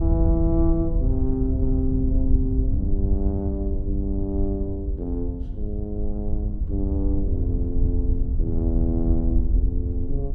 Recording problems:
wind on the microphone; below 76 Hz, SNR -3 dB

